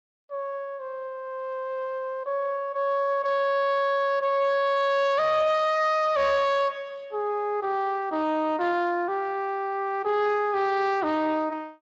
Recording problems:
codec artefacts; MP3, then Speex, log-spectral distance 2 dB
distortion; soft clipping, signal-to-distortion ratio 11 dB

